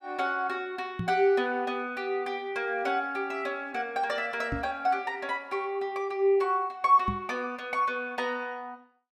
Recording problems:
knock on the microphone; at 1 s, at 4.5 s and at 7 s; peak 0 dB vs average level

